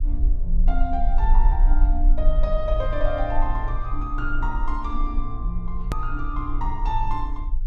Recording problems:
rumble; below 40 Hz, strongest tone 24 Hz, SNR -4 dB
click at an edit; at 6 s

